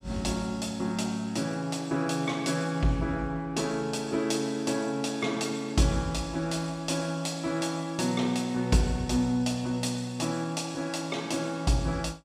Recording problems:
none

